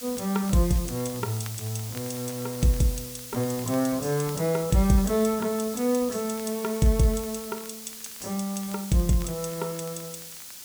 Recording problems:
background hiss; slope +2 dB per octave, SNR 11 dB
crackling; vinyl, SNR 25 dB

